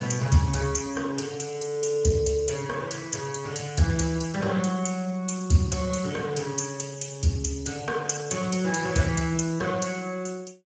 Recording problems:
lossy codec; Speex, log-spectral distance 5 dB, nothing above 7.3 kHz

